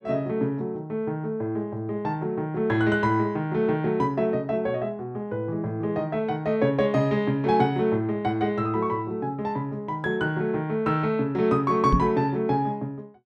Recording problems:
microphone thump; at 12 s; peak +6 dB vs average level

